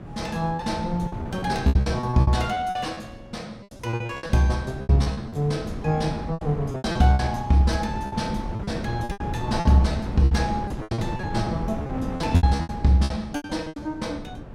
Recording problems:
hum; 60 Hz, harmonics up to 1.3 kHz, SNR 25 dB
wind on the microphone; below 310 Hz, SNR 9 dB
lost packets; 17% of the sound replaced, filled with repeated pitch periods

